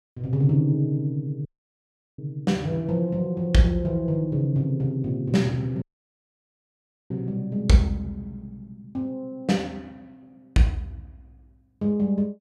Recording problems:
audio cutting out; at 1.5 s for 0.5 s and at 6 s for 1.5 s

